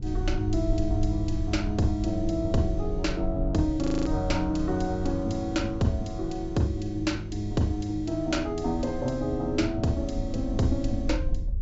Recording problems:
low-pass filter; nothing above 8 kHz
hum; 60 Hz, harmonics up to 480 Hz, SNR 25 dB
wind noise; below 64 Hz, SNR 8 dB
audio freezing; at 4 s

